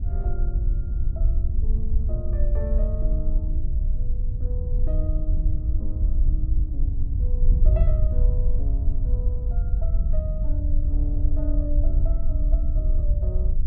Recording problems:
wind noise; below 58 Hz, SNR -14 dB

